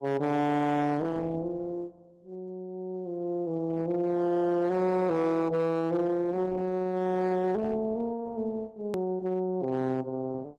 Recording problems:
lossy compression; Opus, log-spectral distance 2 dB, nothing above 13.1 kHz
distorted audio; hard clipping, signal-to-distortion ratio 11 dB
edit click; at 9 s

